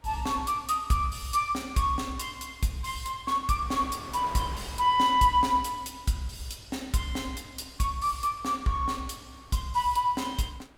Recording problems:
wind noise; below 1.8 kHz, SNR 21 dB

